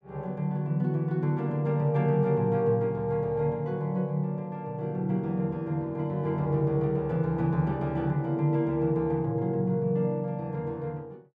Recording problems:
none

